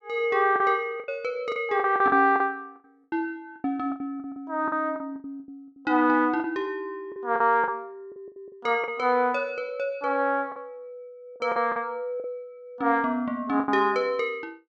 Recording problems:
lost packets; 11% of the sound replaced, filled with the last packet

